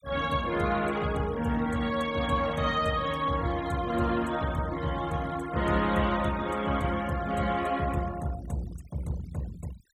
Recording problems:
denoising artefacts; signal-to-artefact ratio 19 dB

